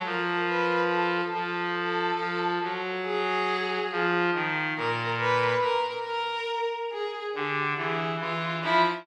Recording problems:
none

